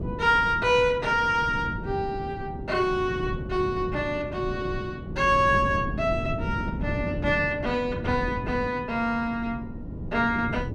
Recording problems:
wind noise; below 250 Hz, SNR 8 dB

